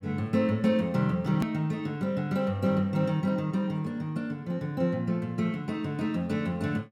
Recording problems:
hard cut with a click; at 1.5 s

